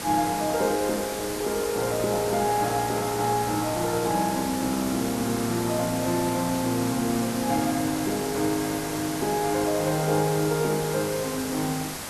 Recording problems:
background hiss; slope -3 dB per octave, SNR 7 dB

